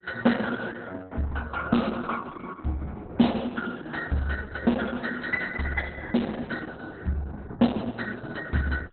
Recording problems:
lossy compression; Opus, log-spectral distance 4 dB, nothing above 4.1 kHz

